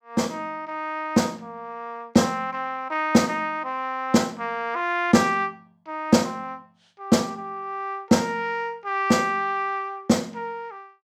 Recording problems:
none

